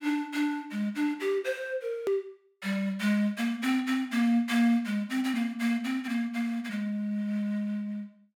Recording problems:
edit click; at 2 s

